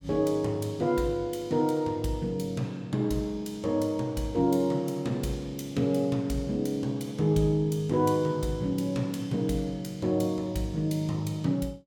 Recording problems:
none

